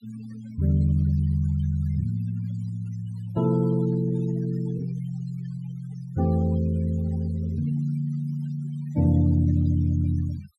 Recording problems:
denoising artefacts; signal-to-artefact ratio 21 dB

